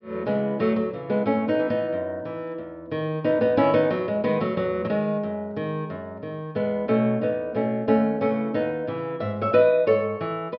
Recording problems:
treble cut off; nothing above 5.5 kHz

